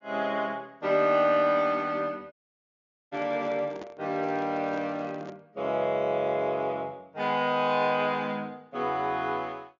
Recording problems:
low-pass filter; nothing above 7 kHz
audio cutting out; at 2.5 s for 1 s
handling noise; from 3 to 5.5 s; peak -9 dB vs average level

